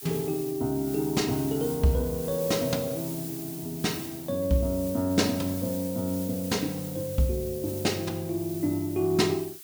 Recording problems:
background hiss; slope +4 dB per octave, SNR 11 dB

